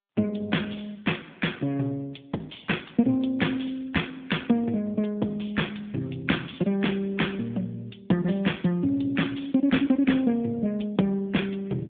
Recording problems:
telephone audio; 150 Hz to 3.6 kHz, AMR-NB

